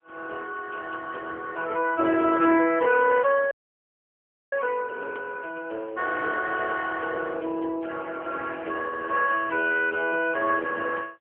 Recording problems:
telephone audio; 190 Hz to 3.3 kHz, AMR-NB
audio freezing; at 3.5 s for 1 s

